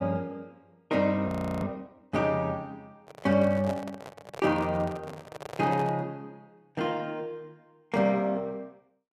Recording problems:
frozen audio; at 1.5 s
microphone handling noise; from 3 to 6 s; peak -4 dB vs average level

